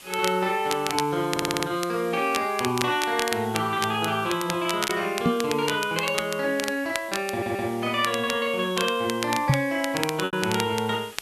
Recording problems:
hiss; SNR 19 dB
crackle; vinyl, SNR 8 dB
lost packets; 1.5% of the sound replaced, filled with repeated pitch periods
audio stuttering; at 1.5 s and at 7.5 s
knock on the microphone; at 5.5 s and at 9.5 s; peak +8 dB vs average level

